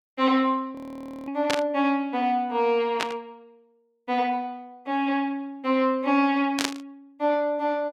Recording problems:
audio freezing; at 1 s for 0.5 s
burst of static; at 1.5 s, at 3 s and at 6.5 s; peak +4 dB vs average level

